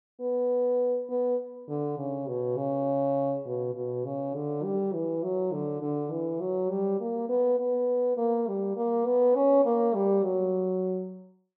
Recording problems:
none

